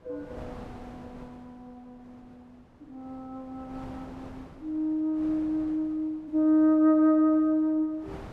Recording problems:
wind on the microphone; below 750 Hz, SNR 24 dB

